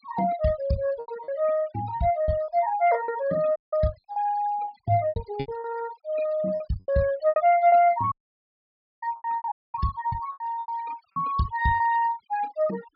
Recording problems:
low-pass filter; nothing above 5.5 kHz
denoising artefacts; signal-to-artefact ratio 19 dB
packet loss; 13% of the sound replaced, filled with repeated pitch periods
dropout; at 3.5 s, at 8 s for 1 s and at 9.5 s

